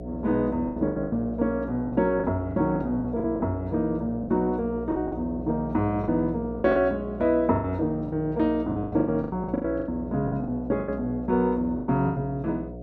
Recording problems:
hum; 60 Hz, harmonics up to 720 Hz, SNR 11 dB
lost packets; 13% of the sound replaced, filled with the last packet

